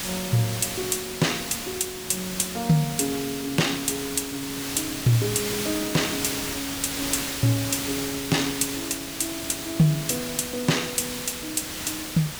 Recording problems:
hiss; slope -1 dB per octave, SNR 4 dB

